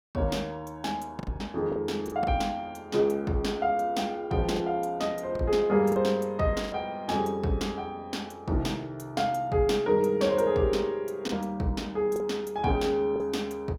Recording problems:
lost packets; 4% of the sound replaced, filled with the last packet

